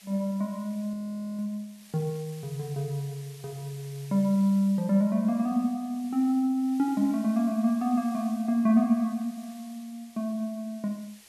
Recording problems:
background hiss; SNR 24 dB
audio freezing; at 1 s

